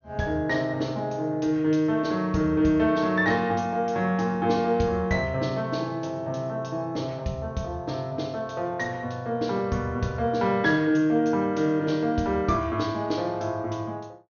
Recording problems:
treble cut off; nothing above 6.6 kHz

